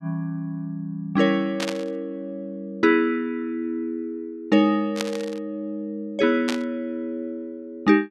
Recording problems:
burst of static; at 1.5 s, at 5 s and at 6.5 s; peak +1 dB vs average level

